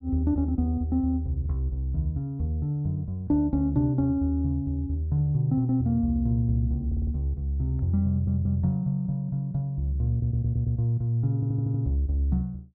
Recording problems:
audio stuttering; 4 times, first at 7 s

